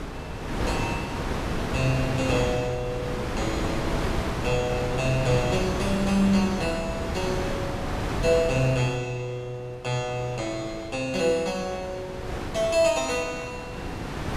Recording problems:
wind on the microphone; below 950 Hz, SNR 4 dB

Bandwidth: 14.5 kHz